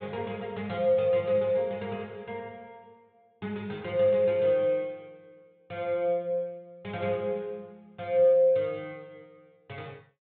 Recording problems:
treble cut off; nothing above 4 kHz

